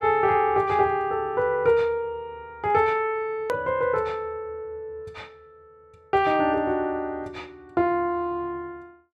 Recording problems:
hard cut with a click; at 3.5 s

